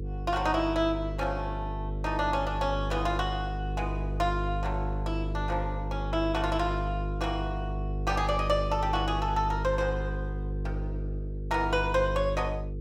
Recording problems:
hum; 50 Hz, harmonics up to 500 Hz, SNR 3 dB

